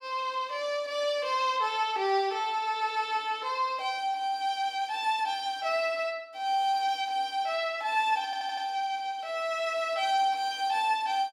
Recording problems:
stutter; at 8.5 s

